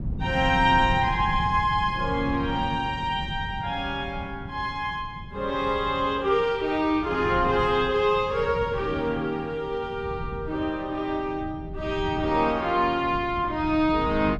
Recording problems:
wind on the microphone; below 170 Hz, SNR 11 dB

